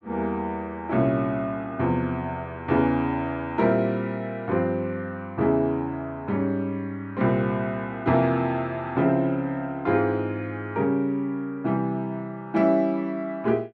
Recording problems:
none

